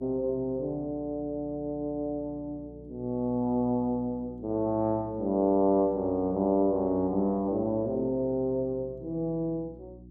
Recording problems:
hum; 60 Hz, harmonics up to 360 Hz, SNR 20 dB

